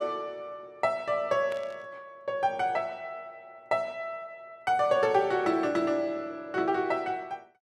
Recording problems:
burst of static; at 1.5 s; peak -11 dB vs average level

